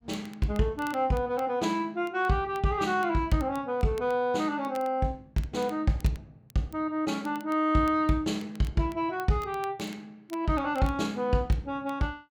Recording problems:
crackle; vinyl, SNR 25 dB

